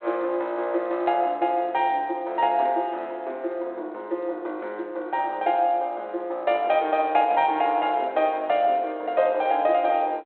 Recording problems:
telephone audio; 280 Hz to 3.4 kHz, G.726

